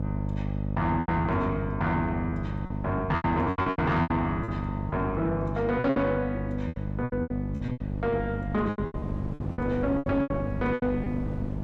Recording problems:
distortion; soft clipping, signal-to-distortion ratio 11 dB
electrical hum; 50 Hz, harmonics up to 650 Hz, SNR 4 dB
wind on the microphone; below 310 Hz, SNR 13 dB
lost packets; 15% of the sound replaced, filled with repeated pitch periods

